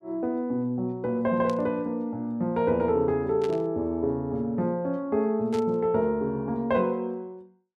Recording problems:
static burst; at 1.5 s, at 3.5 s and at 5.5 s; peak -11 dB vs average level

